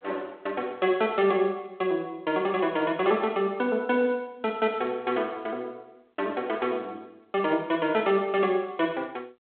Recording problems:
phone line; 280 Hz to 3.5 kHz, G.726

